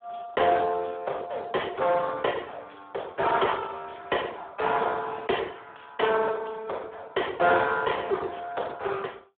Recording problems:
phone line; 340 Hz to 3.5 kHz, Speex

